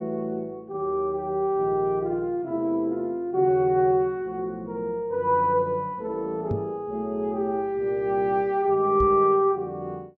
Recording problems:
low-pass filter; nothing above 8 kHz
microphone bump; at 6.5 s and at 9 s; peak -1 dB vs average level

